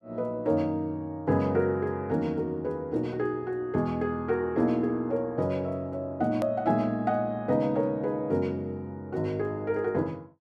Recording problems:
hard cut with a click; at 6.5 s

